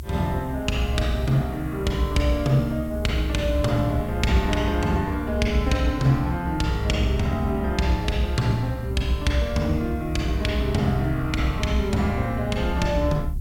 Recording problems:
hiss; SNR 29 dB
rumble; below 70 Hz, strongest tone 64 Hz, SNR 8 dB

